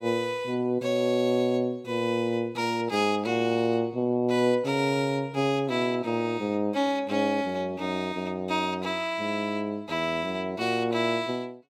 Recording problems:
none

